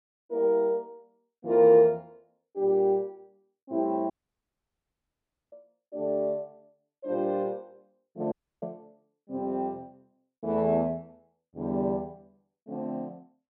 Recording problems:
dropout; at 4 s for 1.5 s and at 8.5 s

